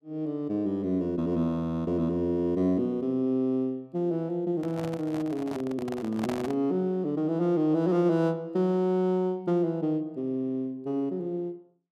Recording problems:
handling noise; from 4.5 to 6.5 s; peak -3 dB vs average level

